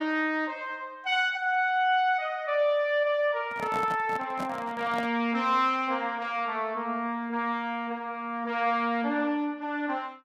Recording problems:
microphone handling noise; from 3.5 to 5 s; peak -5 dB vs average level

